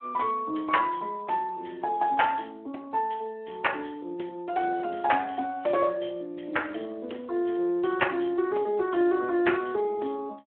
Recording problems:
telephone audio; 240 Hz to 3.1 kHz, Speex

